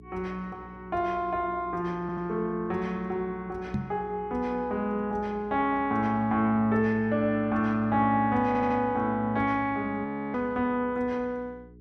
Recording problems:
hum; 60 Hz, harmonics up to 420 Hz, SNR 22 dB
stutter; at 2 s and at 8.5 s
microphone thump; at 3.5 s; peak +1 dB vs average level
audio freezing; at 10 s

